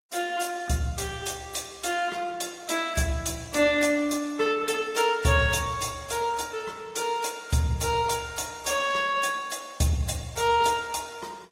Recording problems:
lossy codec; Opus, then AAC, log-spectral distance 5 dB, nothing above 16.5 kHz

